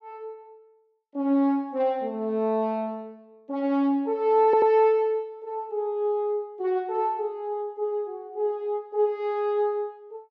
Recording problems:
stutter; at 4.5 s

